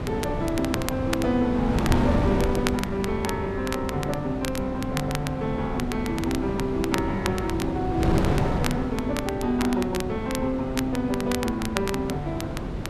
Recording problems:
hum; 50 Hz, harmonics up to 1.3 kHz, SNR 14 dB
wind noise; below 400 Hz, SNR 3 dB
crackle; vinyl, SNR 9 dB

